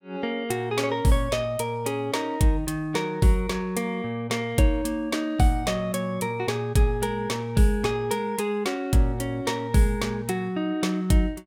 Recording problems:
none

